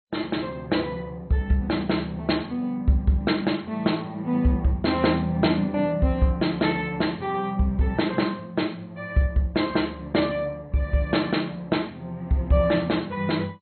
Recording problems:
lossy codec; MP2, log-spectral distance 4 dB, nothing above 4.2 kHz

